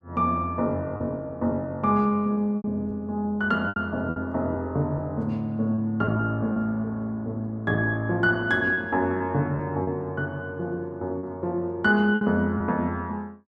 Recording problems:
lost packets; 5% of the sound replaced, filled with repeated pitch periods

